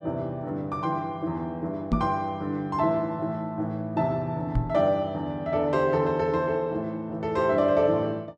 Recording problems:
microphone thump; at 2 s and at 4.5 s; peak +5 dB vs average level

